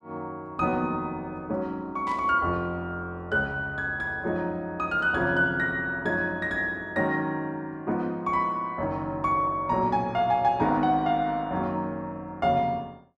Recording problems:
burst of static; at 2 s; peak -15 dB vs average level

